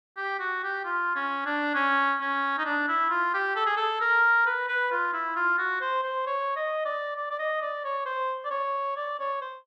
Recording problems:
none

